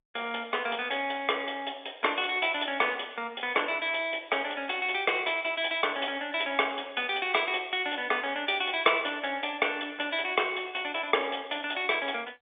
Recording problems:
phone line; 320 Hz to 3.6 kHz, G.711

